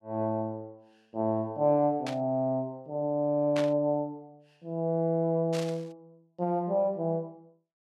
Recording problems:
burst of static; at 2 s, at 3.5 s and at 5.5 s; peak -4 dB vs average level

